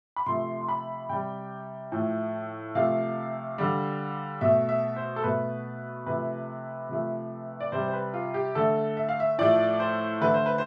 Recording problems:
none

